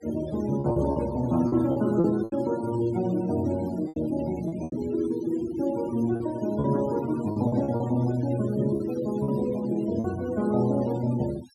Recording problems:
noise reduction artefacts; signal-to-artefact ratio 18 dB
packet loss; 8% of the sound replaced, filled with repeated pitch periods

